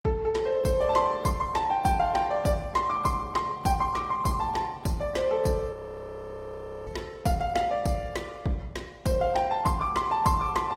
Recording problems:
codec artefacts; Opus, log-spectral distance 3 dB, nothing above 16.5 kHz
audio freezing; at 5.5 s for 1 s

